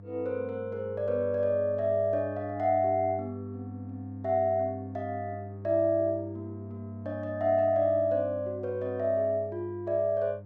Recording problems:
hum; 50 Hz, harmonics up to 700 Hz, SNR 13 dB

